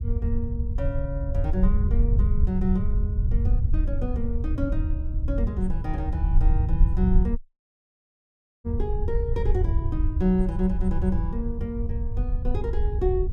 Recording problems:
rumble; below 74 Hz, SNR -4 dB
dropout; at 7.5 s for 1.5 s

